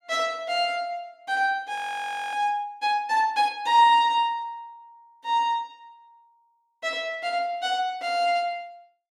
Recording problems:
audio freezing; at 2 s for 0.5 s

